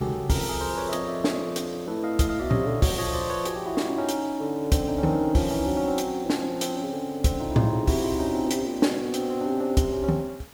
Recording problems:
background hiss; slope -2 dB per octave, SNR 23 dB

